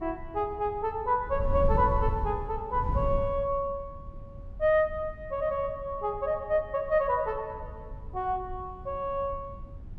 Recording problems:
wind noise; below 98 Hz, SNR 9 dB

